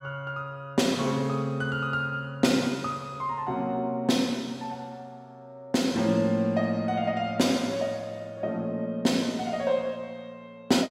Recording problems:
none

